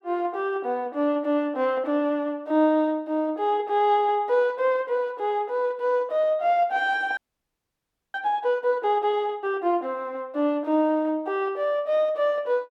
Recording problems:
audio freezing; at 7 s for 1 s

